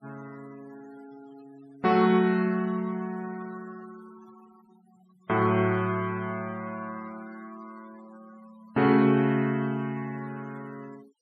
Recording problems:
noise reduction artefacts; signal-to-artefact ratio 25 dB

